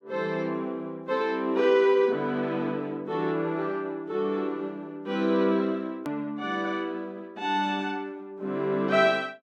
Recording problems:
hard cut with a click; at 6 s

